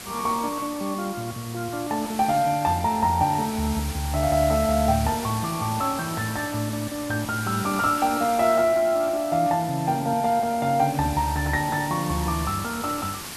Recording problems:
hiss; slope -1 dB per octave, SNR 11 dB

